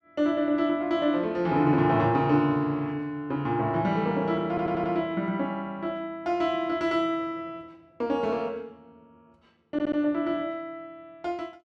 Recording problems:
stutter; at 4.5 s and at 9.5 s

